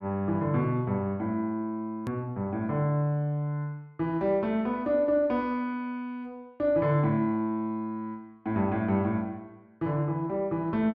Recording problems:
hard cut with a click; at 2 s

